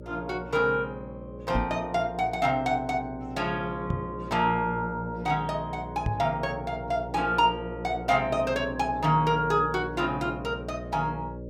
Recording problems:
electrical hum; 60 Hz, harmonics up to 600 Hz, SNR 13 dB
knock on the microphone; at 1.5 s, at 4 s and at 6 s; peak +2 dB vs average level

